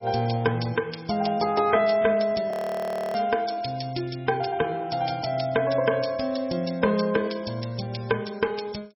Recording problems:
lossy compression; MP3, log-spectral distance 5 dB, nothing above 5.3 kHz
audio freezing; at 2.5 s for 0.5 s

